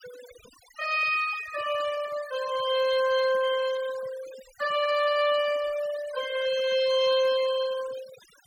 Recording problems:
noise reduction artefacts; signal-to-artefact ratio 15 dB

